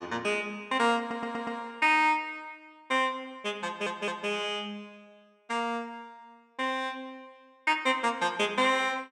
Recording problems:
audio stuttering; at 1 s and at 3.5 s

